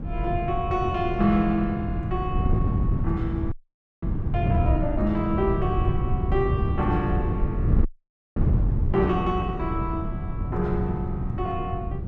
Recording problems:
wind noise; below 140 Hz, SNR 0 dB
frozen audio; at 3.5 s and at 8 s for 0.5 s

